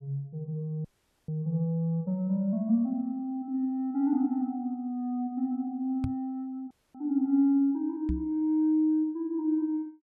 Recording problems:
frozen audio; at 1 s and at 6.5 s
knock on the microphone; at 6 s and at 8 s; peak +1 dB vs average level

